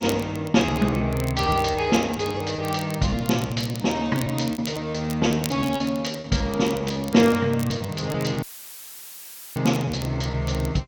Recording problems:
lossy compression; MP2, then G.722, log-spectral distance 3 dB
crackle; vinyl, SNR 18 dB
lost packets; 11% of the sound replaced, filled with repeated pitch periods
audio cutting out; at 8.5 s for 1 s; filled with static

